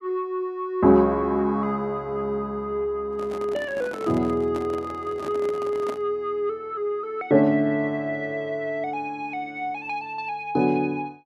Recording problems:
microphone handling noise; from 3 to 6 s; peak -6 dB vs average level

